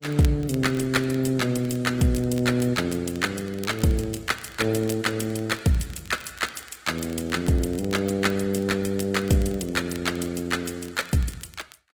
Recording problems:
lossy compression; Opus, log-spectral distance 5 dB, nothing above 19 kHz
crackle; vinyl, SNR 22 dB

